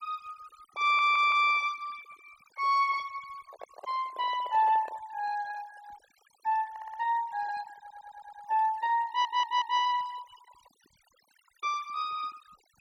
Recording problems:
noise reduction artefacts; signal-to-artefact ratio 23 dB
audio stuttering; 4 times, first at 1 s
microphone handling noise; from 3.5 to 5 s; peak -12 dB vs average level

